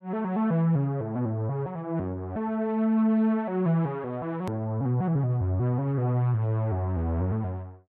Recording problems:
click at an edit; at 4.5 s

